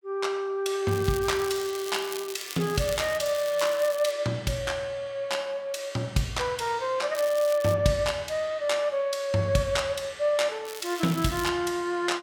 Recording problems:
crackling; from 1 to 4 s, at 7 s and at 11 s; loose cable, SNR 13 dB

